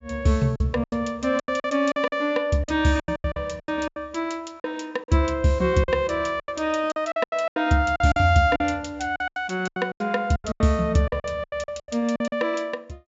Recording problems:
treble missing; nothing above 8 kHz
packet loss; 16% of the sound replaced, filled with silence

